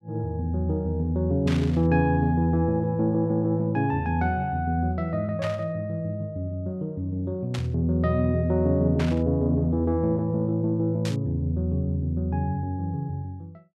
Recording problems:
static burst; 5 times, first at 1.5 s; peak -5 dB vs average level

